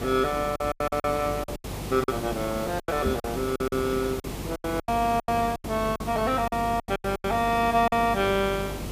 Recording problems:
electrical hum; 50 Hz, harmonics up to 500 Hz, SNR 13 dB
hiss; SNR 10 dB
packet loss; 15% of the sound replaced, filled with silence
microphone bump; at 3 s; peak 0 dB vs average level

